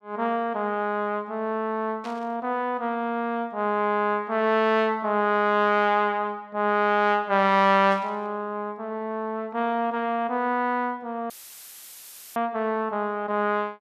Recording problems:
burst of static; at 2 s and at 8 s; peak -13 dB vs average level
dropout; at 11 s for 1 s; filled with static

